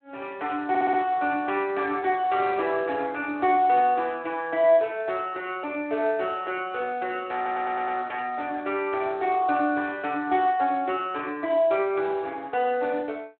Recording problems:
phone line; 280 Hz to 3.3 kHz, Speex
audio stuttering; at 0.5 s and at 7.5 s

